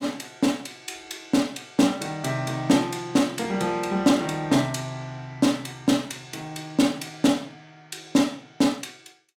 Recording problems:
none

